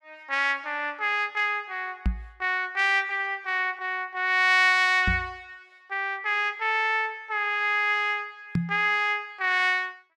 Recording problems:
microphone bump; at 2 s, at 5 s and at 8.5 s; peak +2 dB vs average level

